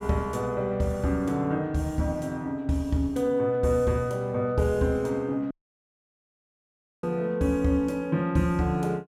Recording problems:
dropout; at 5.5 s for 1.5 s

